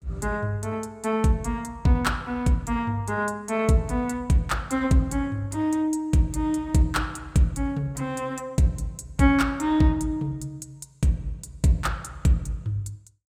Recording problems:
none

